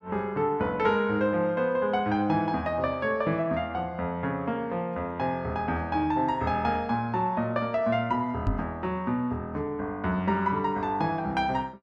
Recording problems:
knock on the microphone; at 8.5 s; peak +3 dB vs average level

